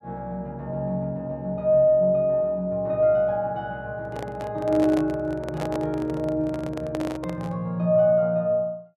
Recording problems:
microphone handling noise; from 4 to 7.5 s; peak -4 dB vs average level

